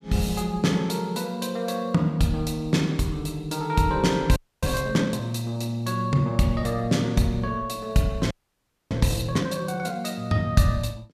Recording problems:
audio freezing; at 4.5 s and at 8.5 s for 0.5 s

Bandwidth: 14.5 kHz